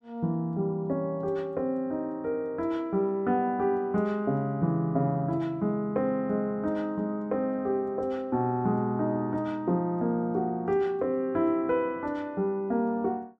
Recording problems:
none

